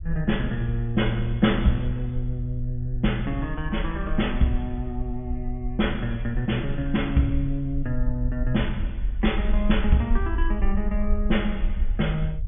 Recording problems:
low-pass filter; nothing above 3.5 kHz
rumble; below 52 Hz, strongest tone 24 Hz, SNR 5 dB

